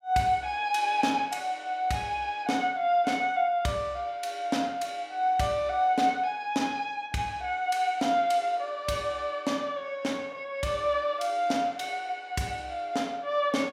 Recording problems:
none

